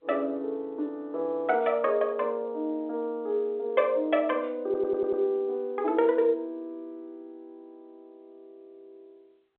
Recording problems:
telephone audio; 260 Hz to 3.9 kHz, G.711
audio stuttering; at 4.5 s

